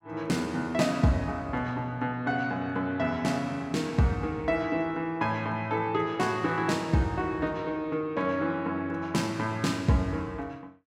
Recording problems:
none

